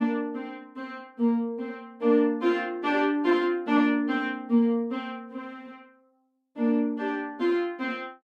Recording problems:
none

